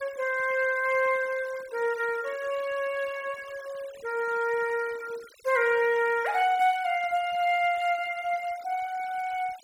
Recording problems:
noise reduction artefacts; signal-to-artefact ratio 20 dB

